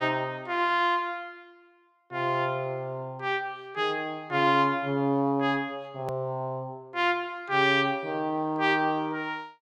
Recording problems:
click at an edit; at 6 s

